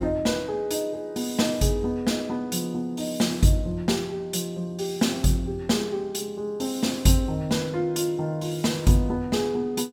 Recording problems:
none

